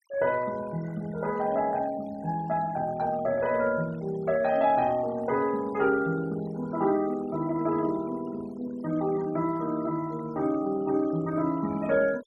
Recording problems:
denoising artefacts; signal-to-artefact ratio 20 dB

